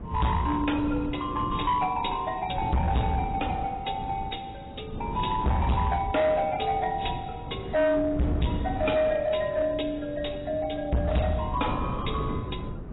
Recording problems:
lossy compression; AAC, log-spectral distance 4 dB, nothing above 3.8 kHz
distortion; hard clipping, signal-to-distortion ratio 6 dB
wind noise; below 270 Hz, SNR 10 dB

